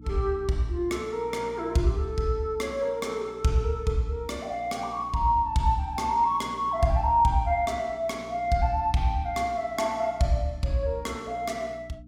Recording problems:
electrical hum; 60 Hz, harmonics up to 300 Hz, SNR 21 dB

